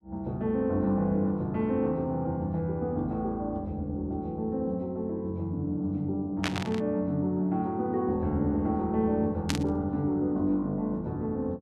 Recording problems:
static burst; at 6.5 s and at 9.5 s; peak +3 dB vs average level

